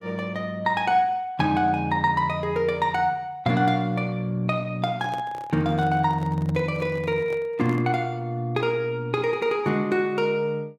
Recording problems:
microphone handling noise; from 5 to 8 s; peak -10 dB vs average level

